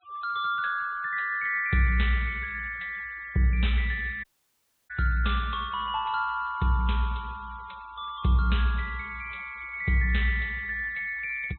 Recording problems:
low-pass filter; nothing above 4 kHz
denoising artefacts; signal-to-artefact ratio 26 dB
dropout; at 4 s for 0.5 s

